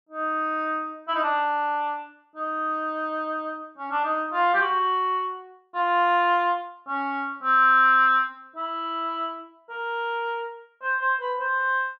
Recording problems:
none

